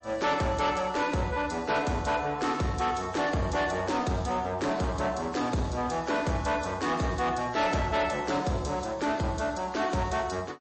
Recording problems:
codec artefacts; MP3, log-spectral distance 4 dB, nothing above 8 kHz
distortion; soft clipping, signal-to-distortion ratio 10 dB

